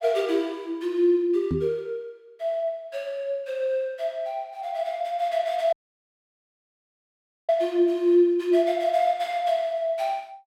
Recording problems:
microphone bump; at 1.5 s; peak +1 dB vs average level
dropout; at 5.5 s for 2 s

